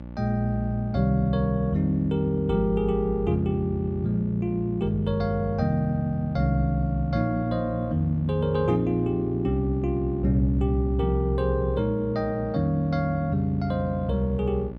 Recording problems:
hum; 60 Hz, harmonics up to 900 Hz, SNR 14 dB

